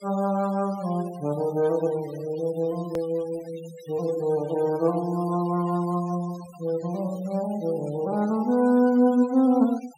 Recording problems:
noise reduction artefacts; signal-to-artefact ratio 23 dB
click at an edit; at 3 s

